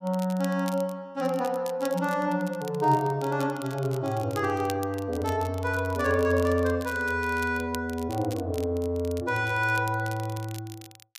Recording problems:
crackle; vinyl, SNR 19 dB

